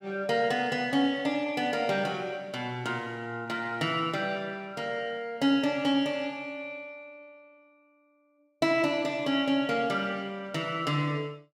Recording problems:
none

